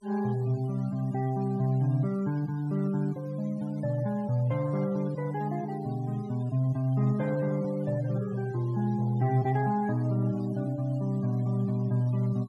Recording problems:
denoising artefacts; signal-to-artefact ratio 23 dB

